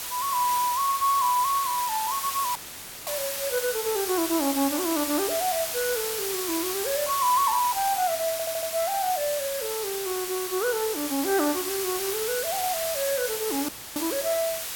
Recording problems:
hiss; slope +1 dB per octave, SNR 3 dB
audio cutting out; at 2.5 s for 0.5 s and at 14 s; filled with static
stutter; at 8.5 s

